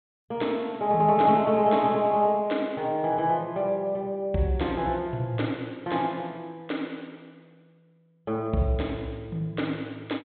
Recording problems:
low-pass filter; nothing above 4 kHz

